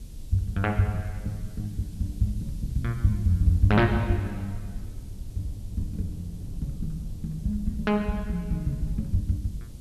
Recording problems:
background hiss; SNR 27 dB
low-frequency rumble; below 96 Hz, SNR 13 dB

